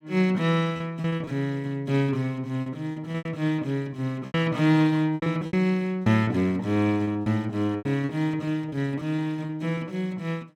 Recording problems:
packet loss; 11% of the sound replaced, filled with repeated pitch periods

